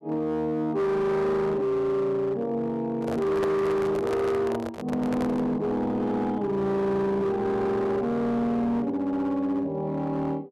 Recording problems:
distortion; hard clipping, signal-to-distortion ratio 10 dB
handling noise; from 3 to 5.5 s; peak -1 dB vs average level

